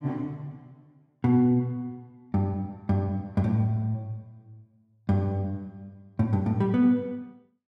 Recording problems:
none

